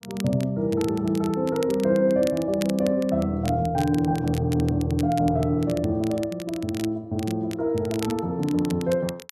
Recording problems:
crackle; vinyl, SNR 18 dB

